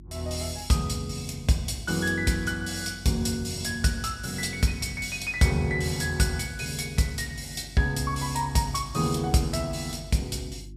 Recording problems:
hum; 50 Hz, harmonics up to 350 Hz, SNR 19 dB

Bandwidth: 14.5 kHz